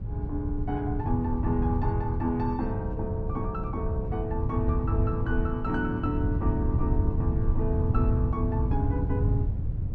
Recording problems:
wind noise; below 110 Hz, SNR -2 dB

